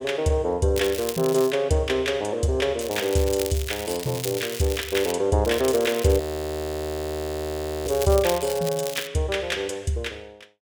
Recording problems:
crackle; at 1 s, from 3 to 5 s and from 5.5 to 9 s; loose cable, SNR 11 dB
frozen audio; at 6 s for 1.5 s

